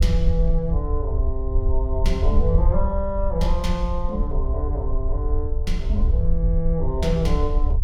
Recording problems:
rumble; below 64 Hz, SNR -3 dB

